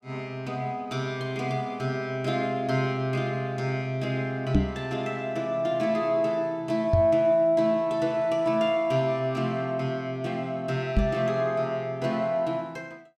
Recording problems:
microphone thump; at 4.5 s, at 7 s and at 11 s; peak +7 dB vs average level

